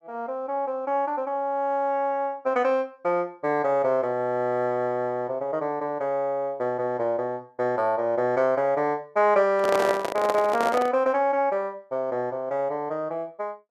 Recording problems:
microphone handling noise; from 9.5 to 11 s; peak +2 dB vs average level

